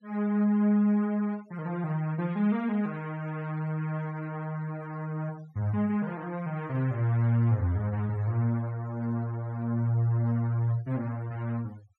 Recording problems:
noise reduction artefacts; signal-to-artefact ratio 25 dB

